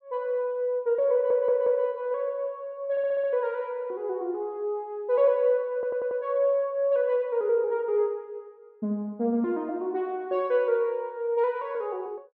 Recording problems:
audio stuttering; at 1 s, at 3 s and at 5.5 s

